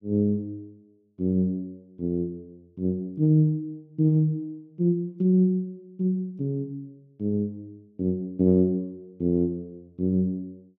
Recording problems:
none

